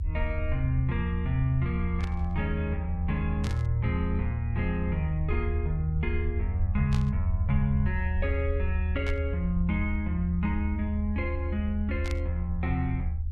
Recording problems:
rumble; below 78 Hz, strongest tone 78 Hz, SNR 0 dB
static burst; 5 times, first at 2 s; peak -4 dB vs average level

